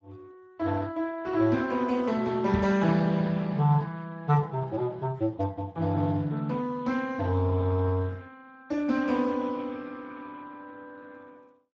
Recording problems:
codec artefacts; Speex, log-spectral distance 3 dB
microphone thump; at 2.5 s; peak -1 dB vs average level

